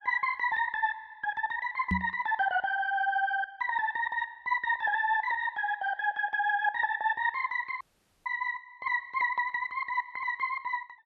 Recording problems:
microphone thump; at 2 s; peak +3 dB vs average level
audio cutting out; at 8 s

